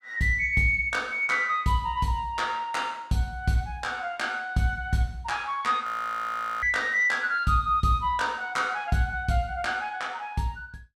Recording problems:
frozen audio; at 6 s for 1 s

